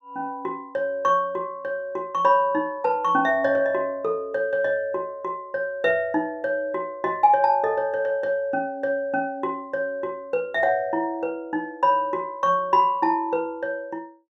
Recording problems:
none

